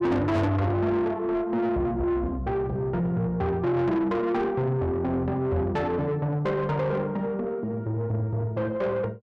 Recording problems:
distorted audio; soft clipping, signal-to-distortion ratio 8 dB

